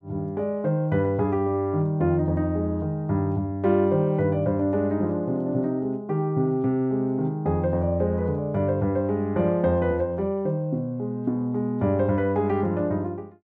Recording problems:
none

